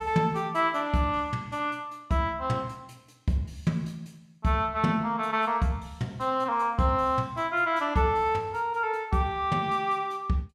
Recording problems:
none

